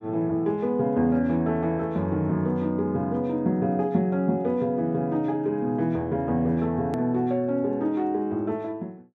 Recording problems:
edit click; at 7 s

